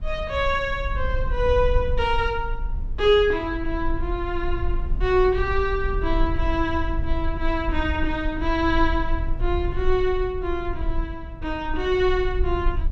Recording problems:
low-frequency rumble; below 52 Hz, SNR 6 dB

